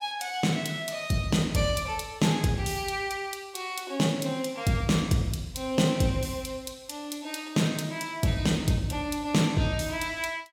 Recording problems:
none

